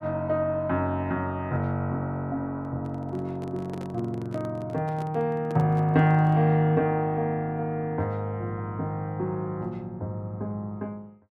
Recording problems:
microphone handling noise; from 2.5 to 6.5 s; peak -7 dB vs average level

